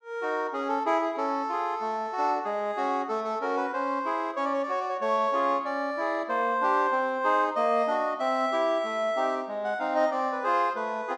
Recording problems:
none

